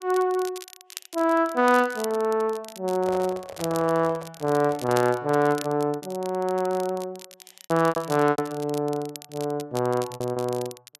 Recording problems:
crackling; vinyl, SNR 17 dB
lost packets; 5% of the sound replaced, filled with repeated pitch periods
handling noise; from 3 to 5 s; peak -7 dB vs average level

